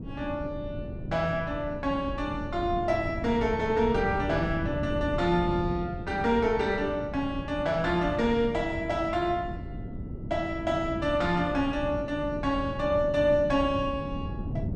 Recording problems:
wind on the microphone; below 230 Hz, SNR 9 dB

